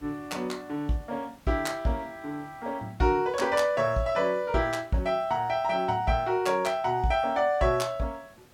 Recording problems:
hiss; slope -4 dB per octave, SNR 29 dB

